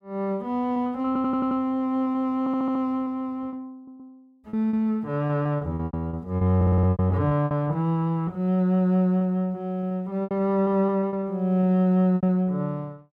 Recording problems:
packet loss; 9% of the sound replaced, filled with repeated pitch periods
audio stuttering; 4 times, first at 1 s

